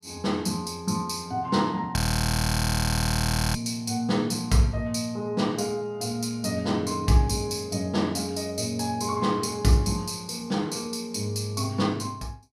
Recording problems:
frozen audio; at 2 s for 1.5 s

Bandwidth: 15.5 kHz